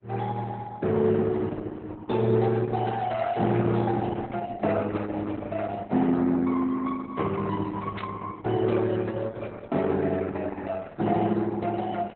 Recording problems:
lossy codec; Opus, then Opus, log-spectral distance 3 dB, nothing above 4 kHz
burst of static; at 8 s; peak -4 dB vs average level

